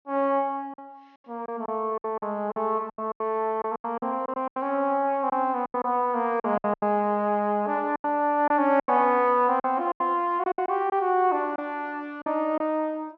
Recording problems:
treble missing; nothing above 6.6 kHz
lost packets; 11% of the sound replaced, filled with silence

